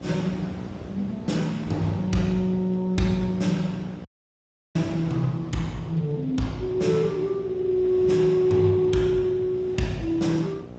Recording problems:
lossy compression; Speex, log-spectral distance 3 dB, nothing above 7.6 kHz
hum; 60 Hz, harmonics up to 1.3 kHz, SNR 17 dB
wind on the microphone; below 530 Hz, SNR 18 dB
dropout; at 4 s for 0.5 s

